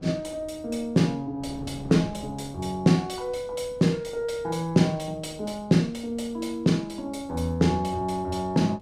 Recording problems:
wind on the microphone; below 340 Hz, SNR 21 dB

